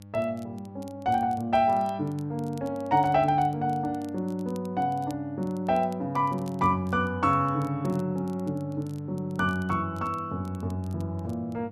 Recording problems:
hum; 50 Hz, harmonics up to 800 Hz, SNR 18 dB
crackling; vinyl, SNR 29 dB

